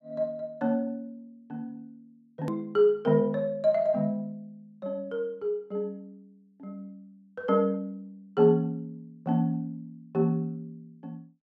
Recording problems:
edit click; at 2.5 s

